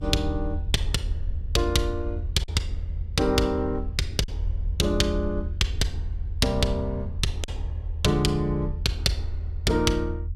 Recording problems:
low-frequency rumble; below 80 Hz, SNR 5 dB
lost packets; 1.5% of the sound replaced, filled with silence

